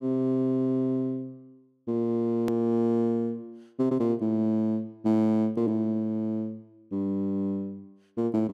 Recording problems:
click at an edit; at 2.5 s

